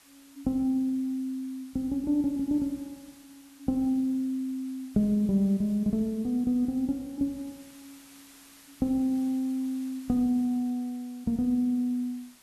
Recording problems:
hiss; slope 0 dB per octave, SNR 25 dB

